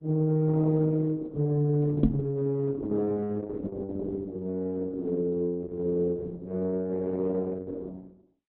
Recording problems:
lossy compression; AAC, then Opus, log-spectral distance 2 dB
knock on the microphone; at 2 s; peak +10 dB vs average level

